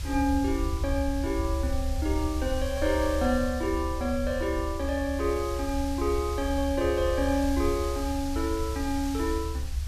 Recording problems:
hiss; slope +1 dB per octave, SNR 14 dB
low-frequency rumble; below 72 Hz, SNR 5 dB

